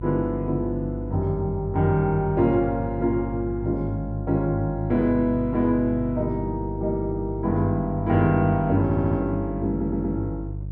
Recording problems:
hum; 50 Hz, harmonics up to 350 Hz, SNR 9 dB
stutter; at 9 s and at 9.5 s

